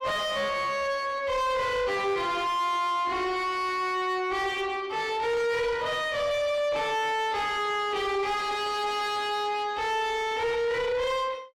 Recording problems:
distorted audio; soft clipping, signal-to-distortion ratio 7 dB

